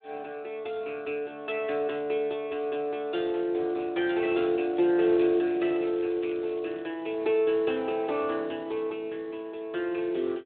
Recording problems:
telephone audio; 260 Hz to 3.5 kHz, Speex
crackling; from 4 to 7 s; loose cable, SNR 27 dB

